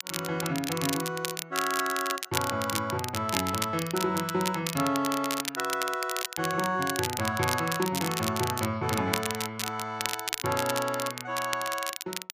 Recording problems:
crackling; vinyl, SNR 4 dB

